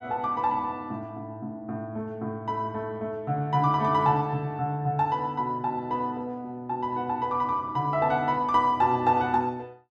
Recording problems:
none

